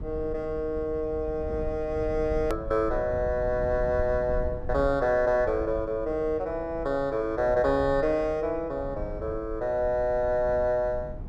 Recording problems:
low-frequency rumble; below 100 Hz, SNR 12 dB
hard cut with a click; at 2.5 s

